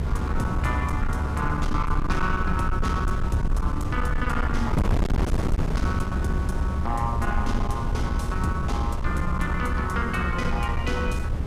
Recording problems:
distortion; soft clipping, signal-to-distortion ratio 8 dB
rumble; below 72 Hz, SNR 3 dB
wind on the microphone; below 160 Hz, SNR 1 dB

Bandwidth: 15 kHz